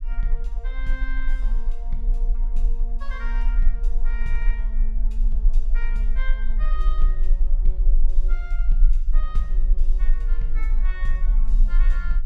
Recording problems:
rumble; below 34 Hz, strongest tone 20 Hz, SNR -14 dB

